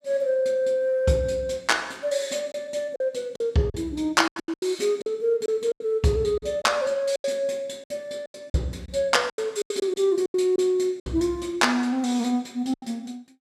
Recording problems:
packet loss; 10% of the sound replaced, filled with silence

